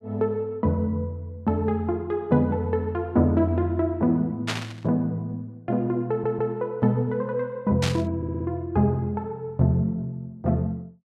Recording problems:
burst of static; at 4.5 s and at 8 s; peak +2 dB vs average level
audio stuttering; at 6 s and at 8 s

